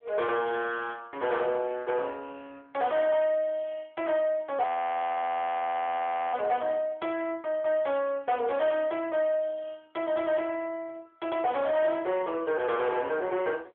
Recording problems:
phone line; 340 Hz to 3.4 kHz, AMR-NB
distortion; soft clipping, signal-to-distortion ratio 12 dB
audio freezing; at 4.5 s for 1.5 s

